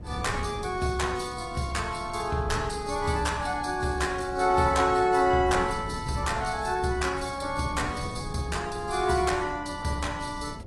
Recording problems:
lossy compression; AAC, log-spectral distance 4 dB
electrical hum; 60 Hz, harmonics up to 720 Hz, SNR 23 dB
wind on the microphone; below 190 Hz, SNR 14 dB

